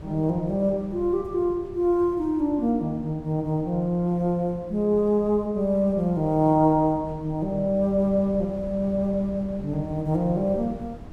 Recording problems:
wind noise; below 230 Hz, SNR 18 dB

